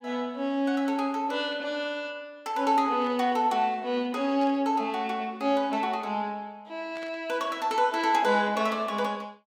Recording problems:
burst of static; at 3 s, at 4.5 s and at 7 s; peak -14 dB vs average level

